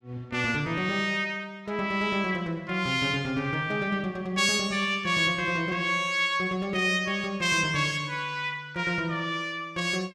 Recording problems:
none

